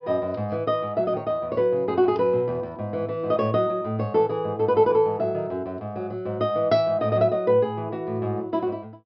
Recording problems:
treble missing; nothing above 5.5 kHz

